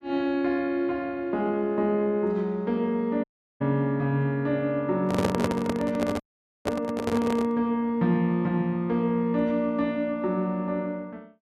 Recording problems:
audio cutting out; at 3 s and at 6 s
microphone handling noise; from 5 to 7.5 s; peak +5 dB vs average level

